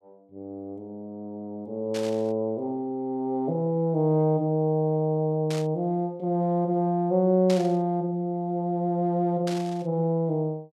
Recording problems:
static burst; 4 times, first at 2 s; peak -5 dB vs average level

